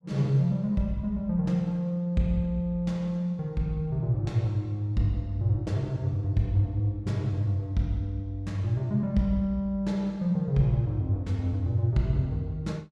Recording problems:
none

